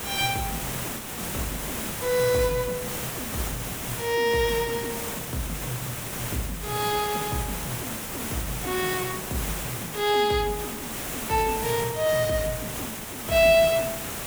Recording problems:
background hiss; slope -3 dB per octave, SNR 5 dB

